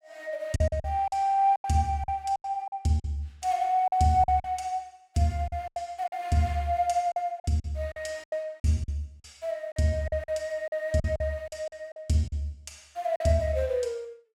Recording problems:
packet loss; 11% of the sound replaced, filled with silence

